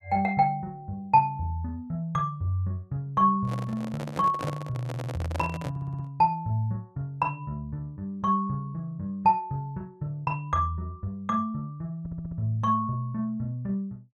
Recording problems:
handling noise; from 3.5 to 6 s; peak -2 dB vs average level
stutter; at 5 s, at 5.5 s and at 12 s

